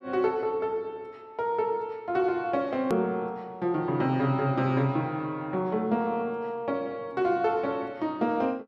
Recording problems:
edit click; at 3 s

